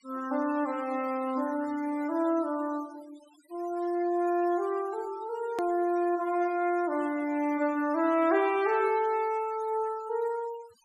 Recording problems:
noise reduction artefacts; signal-to-artefact ratio 20 dB
hard cut with a click; at 5.5 s

